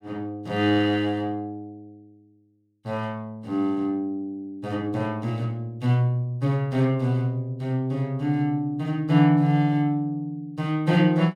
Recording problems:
none

